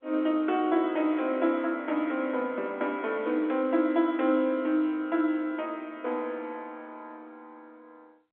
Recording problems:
phone line; 240 Hz to 3.5 kHz, G.711

